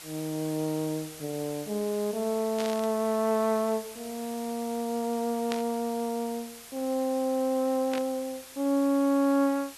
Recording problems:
hiss; slope +1 dB per octave, SNR 15 dB
static burst; at 2.5 s, at 5.5 s and at 8 s; peak -3 dB vs average level

